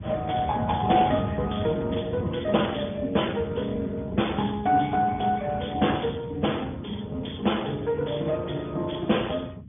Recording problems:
treble missing; nothing above 3.5 kHz
codec artefacts; Speex, log-spectral distance 6 dB
low-frequency rumble; below 200 Hz, SNR 10 dB

